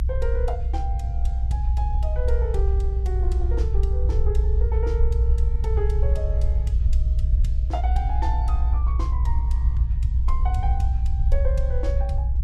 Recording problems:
rumble; below 62 Hz, strongest tone 60 Hz, SNR -10 dB

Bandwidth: 14.5 kHz